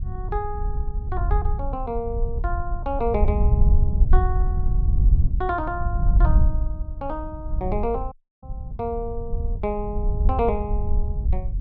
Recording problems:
wind noise; below 70 Hz, SNR -4 dB
audio cutting out; at 8 s

